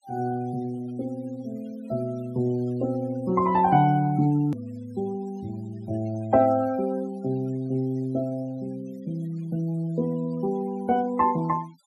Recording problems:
denoising artefacts; signal-to-artefact ratio 25 dB
click at an edit; at 4.5 s

